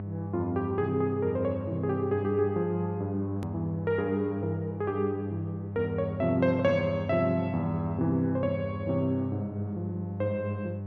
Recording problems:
hum; 50 Hz, harmonics up to 700 Hz, SNR 7 dB
edit click; at 3.5 s

